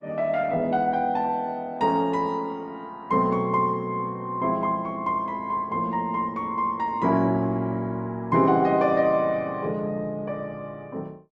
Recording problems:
lossy codec; Opus, log-spectral distance 2 dB

